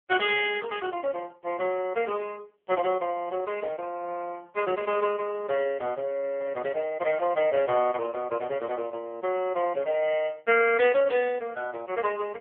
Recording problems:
phone line; 300 Hz to 3 kHz, AMR-NB

